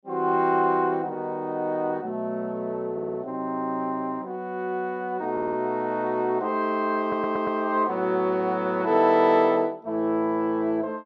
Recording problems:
audio stuttering; at 3 s, at 5.5 s and at 7 s

